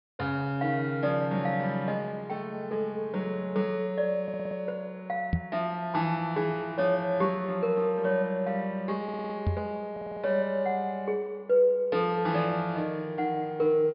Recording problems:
treble missing; nothing above 5.5 kHz
audio stuttering; at 4 s, at 9 s and at 10 s
microphone thump; at 5.5 s and at 9.5 s; peak +6 dB vs average level

